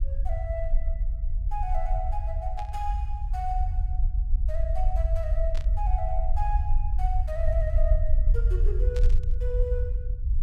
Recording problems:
rumble; below 56 Hz, SNR -8 dB
burst of static; at 2.5 s, at 5.5 s and at 9 s; peak -4 dB vs average level

